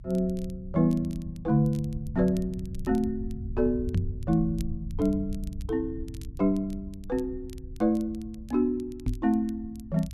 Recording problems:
low-frequency rumble; below 100 Hz, SNR 11 dB
crackling; vinyl, SNR 27 dB
microphone thump; at 4 s and at 9 s; peak +5 dB vs average level

